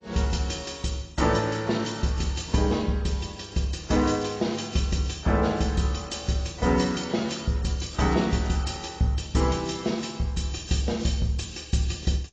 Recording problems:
lossy codec; AAC, log-spectral distance 5 dB, nothing above 7.6 kHz

